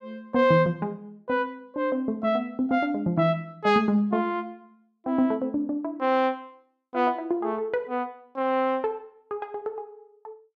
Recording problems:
none

